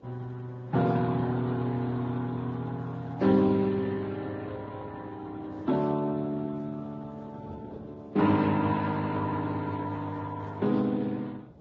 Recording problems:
lossy compression; Speex, then Vorbis, log-spectral distance 3 dB
wind noise; below 460 Hz, SNR 21 dB

